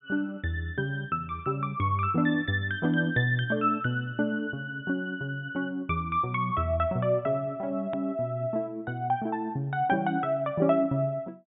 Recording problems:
treble cut off; nothing above 4 kHz
click at an edit; at 8 s

